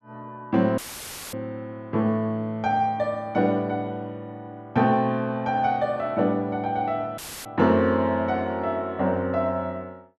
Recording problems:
dropout; at 1 s for 0.5 s and at 7 s; filled with static

